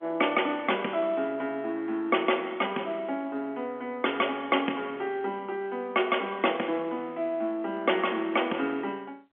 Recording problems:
telephone audio; 220 Hz to 3.3 kHz, G.711

